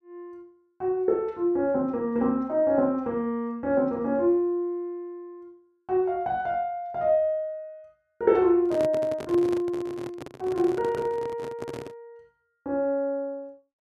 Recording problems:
microphone handling noise; from 8.5 to 12 s; peak -4 dB vs average level

